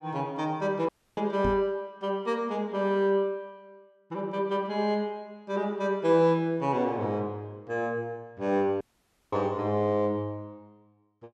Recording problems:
audio cutting out; at 1 s and at 9 s for 0.5 s
microphone bump; at 1.5 s; peak -1 dB vs average level

